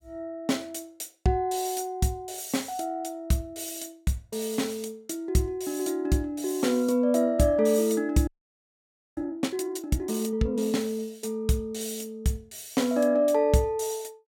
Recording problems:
frozen audio; at 8.5 s for 1 s

